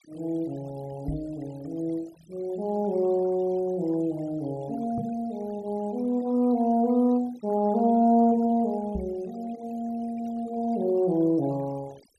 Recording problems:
noise reduction artefacts; signal-to-artefact ratio 25 dB
microphone bump; at 1 s, at 5 s and at 9 s; peak -2 dB vs average level

